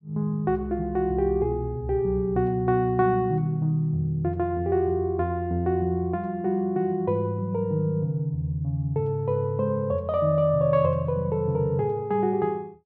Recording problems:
none

